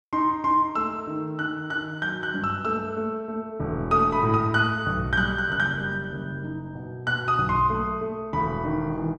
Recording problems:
none

